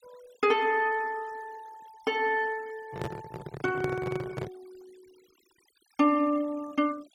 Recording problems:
noise reduction artefacts; signal-to-artefact ratio 25 dB
microphone handling noise; from 3 to 4.5 s; peak -1 dB vs average level

